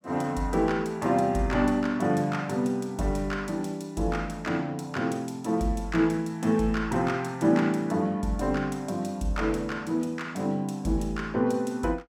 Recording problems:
none

